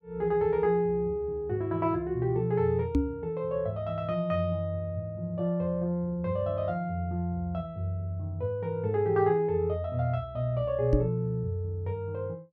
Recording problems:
microphone thump; at 3 s and at 11 s; peak +7 dB vs average level

